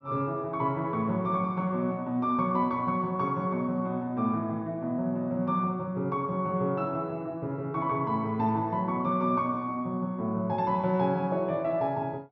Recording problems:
treble missing; nothing above 6 kHz

